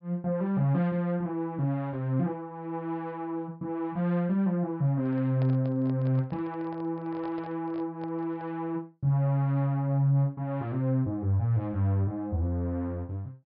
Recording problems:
treble missing; nothing above 5.5 kHz
microphone handling noise; from 5 to 8.5 s; peak -10 dB vs average level

